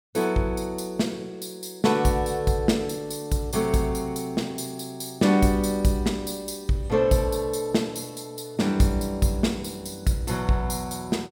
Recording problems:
none

